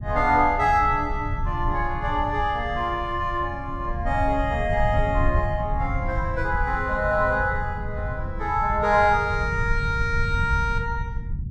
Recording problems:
rumble; below 100 Hz, SNR 6 dB

